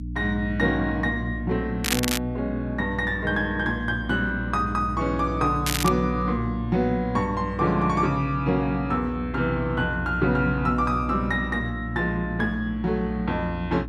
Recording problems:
hum; 60 Hz, harmonics up to 300 Hz, SNR 8 dB
crackle; at 2 s and at 5.5 s; loose cable, SNR 3 dB

